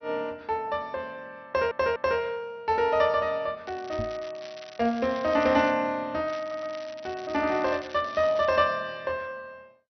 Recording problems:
lossy compression; MP2, log-spectral distance 3 dB, nothing above 5.5 kHz
audio stuttering; at 1.5 s and at 6.5 s
crackling; from 3.5 to 5.5 s and from 6.5 to 8.5 s; loose cable, SNR 20 dB
microphone bump; at 4 s; peak -4 dB vs average level

